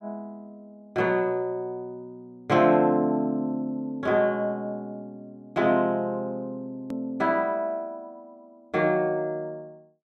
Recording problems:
click at an edit; at 7 s

